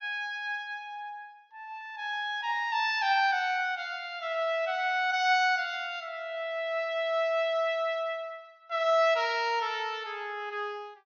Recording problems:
low-pass filter; nothing above 6.6 kHz

